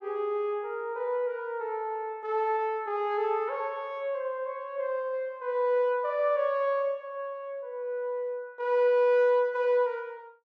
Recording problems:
none

